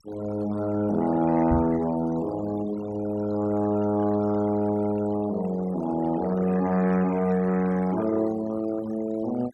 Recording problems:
noise reduction artefacts; signal-to-artefact ratio 17 dB
microphone bump; at 1.5 s; peak +2 dB vs average level

